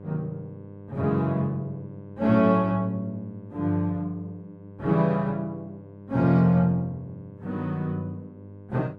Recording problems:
mains hum; 50 Hz, harmonics up to 1.1 kHz, SNR 19 dB

